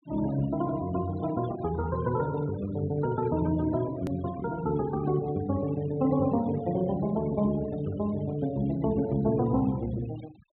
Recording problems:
treble missing; nothing above 4 kHz
denoising artefacts; signal-to-artefact ratio 19 dB
hard cut with a click; at 4 s

